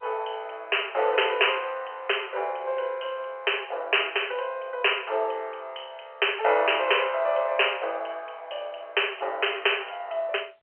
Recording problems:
telephone audio; 340 Hz to 3.2 kHz, G.711

